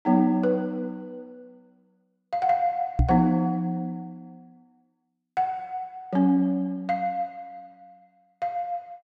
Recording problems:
knock on the microphone; at 3 s; peak +8 dB vs average level

